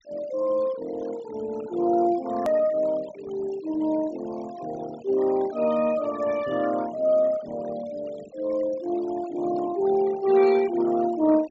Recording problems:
treble missing; nothing above 8 kHz
noise reduction artefacts; signal-to-artefact ratio 19 dB
edit click; at 2.5 s

